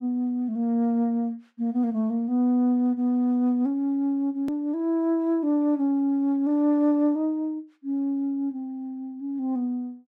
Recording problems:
click at an edit; at 4.5 s

